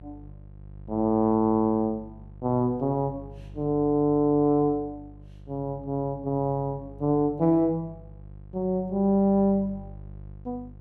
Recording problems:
hum; 50 Hz, harmonics up to 550 Hz, SNR 20 dB

